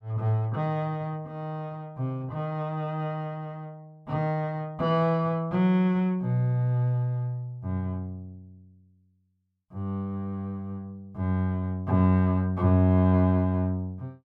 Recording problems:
none

